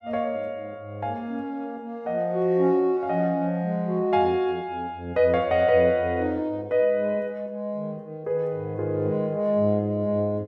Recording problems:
none

